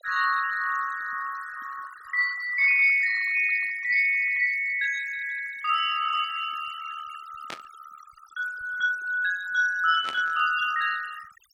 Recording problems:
noise reduction artefacts; signal-to-artefact ratio 15 dB
burst of static; at 7.5 s and at 10 s; peak -8 dB vs average level

